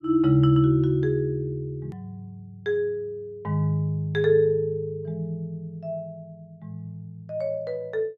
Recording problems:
click at an edit; at 2 s

